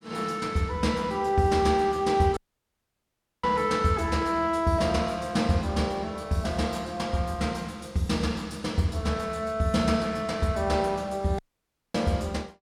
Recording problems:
dropout; at 2.5 s for 1 s and at 11 s for 0.5 s

